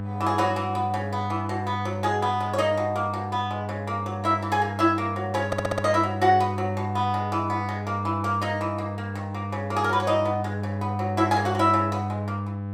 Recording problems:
mains hum; 50 Hz, harmonics up to 1.3 kHz, SNR 6 dB
stutter; at 5.5 s

